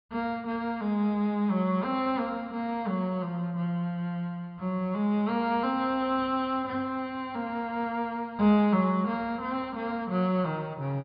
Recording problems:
low-pass filter; nothing above 5.1 kHz

